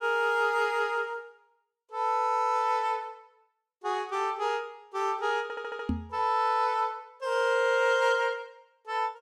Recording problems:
stutter; at 5.5 s
knock on the microphone; at 6 s; peak +2 dB vs average level

